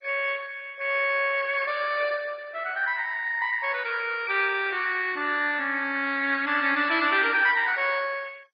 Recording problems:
lossy compression; MP3, then MP2, log-spectral distance 5 dB, nothing above 4.4 kHz

